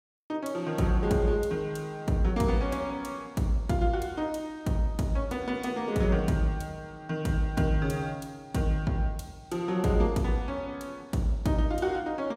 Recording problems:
none

